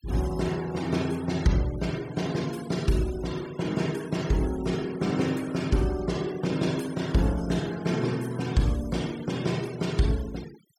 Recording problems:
denoising artefacts; signal-to-artefact ratio 17 dB

